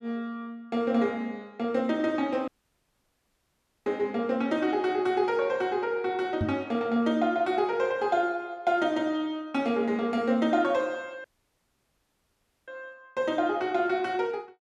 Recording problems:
audio cutting out; at 2.5 s for 1.5 s and at 11 s for 1.5 s
microphone thump; at 6.5 s; peak +1 dB vs average level

